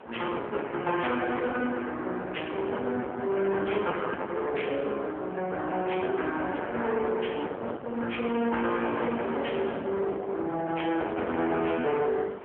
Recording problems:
telephone audio; 220 Hz to 3.3 kHz, AMR-NB
distortion; soft clipping, signal-to-distortion ratio 8 dB
wind on the microphone; below 1.2 kHz, SNR 12 dB

